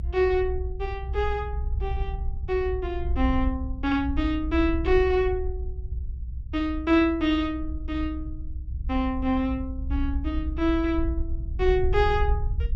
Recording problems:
low-frequency rumble; below 64 Hz, SNR 5 dB

